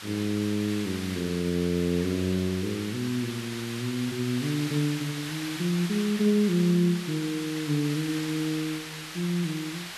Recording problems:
background hiss; SNR 9 dB

